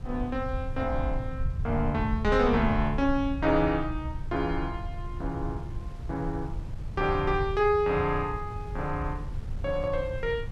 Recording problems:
rumble; below 94 Hz, SNR 7 dB
wind on the microphone; below 410 Hz, SNR 19 dB

